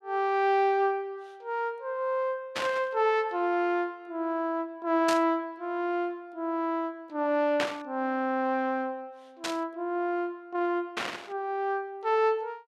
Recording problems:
burst of static; 5 times, first at 2.5 s; peak +3 dB vs average level

